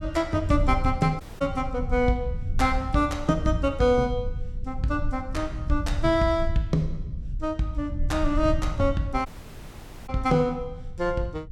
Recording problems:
low-frequency rumble; below 78 Hz, SNR 7 dB
dropout; at 1 s and at 9.5 s for 1 s

